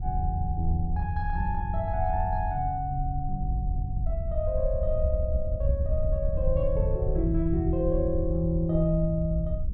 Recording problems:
wind noise; below 74 Hz, SNR 2 dB

